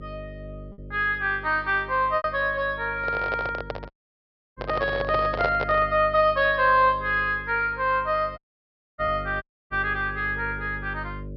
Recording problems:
low-pass filter; nothing above 5.5 kHz
hum; 50 Hz, harmonics up to 600 Hz, SNR 16 dB
lost packets; 0.9% of the sound replaced, filled with repeated pitch periods
microphone handling noise; from 3 to 6 s; peak 0 dB vs average level
audio cutting out; at 4 s for 0.5 s, at 8.5 s for 0.5 s and at 9.5 s

